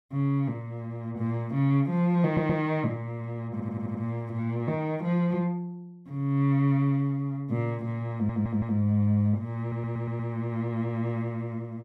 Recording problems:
audio stuttering; 4 times, first at 2.5 s

